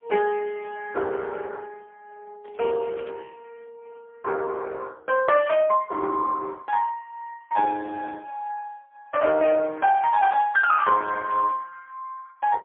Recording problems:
phone line; 280 Hz to 3 kHz, AMR-NB, then MP3
crackling; at 2.5 s and from 9.5 to 12 s; loose cable, SNR 30 dB

